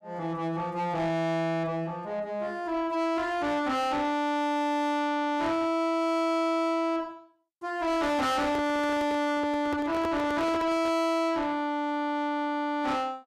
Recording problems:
distortion; soft clipping, signal-to-distortion ratio 7 dB
microphone handling noise; from 8.5 to 11 s; peak -1 dB vs average level

